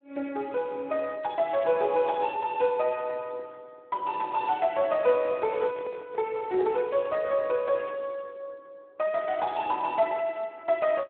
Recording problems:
telephone audio; 220 Hz to 3.6 kHz, Speex
microphone handling noise; from 5 to 7.5 s; peak -9 dB vs average level

